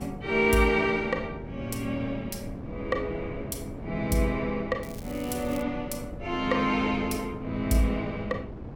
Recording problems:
wind noise; below 330 Hz, SNR 11 dB
crackle; at 5 s; loose cable, SNR 20 dB

